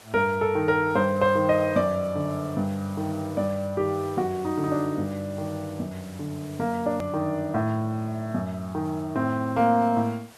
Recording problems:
hiss; SNR 23 dB
hard cut with a click; at 7 s

